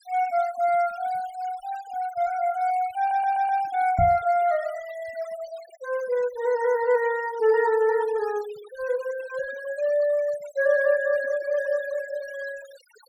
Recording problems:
noise reduction artefacts; signal-to-artefact ratio 21 dB
audio stuttering; at 3 s
microphone thump; at 4 s; peak +1 dB vs average level

